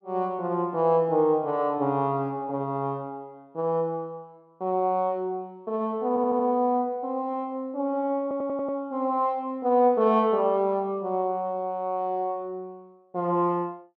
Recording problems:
audio stuttering; at 6 s and at 8 s

